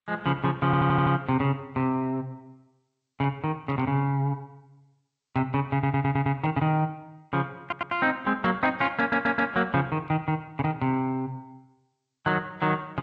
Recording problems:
lossy compression; AAC, then G.722, log-spectral distance 2 dB
stutter; 4 times, first at 0.5 s

